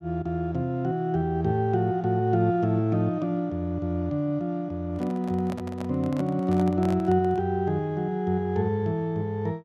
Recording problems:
handling noise; from 5 to 7.5 s; peak -8 dB vs average level

